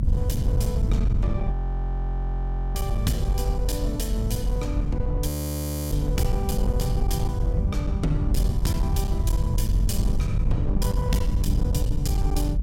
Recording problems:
distortion; hard clipping, uneven, signal-to-distortion ratio 11 dB
low-frequency rumble; below 96 Hz, strongest tone 44 Hz, SNR -4 dB
frozen audio; at 1.5 s for 1 s and at 5.5 s for 0.5 s

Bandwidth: 16.5 kHz